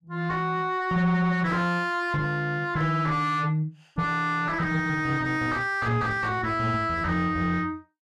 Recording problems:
distortion; soft clipping, signal-to-distortion ratio 7 dB

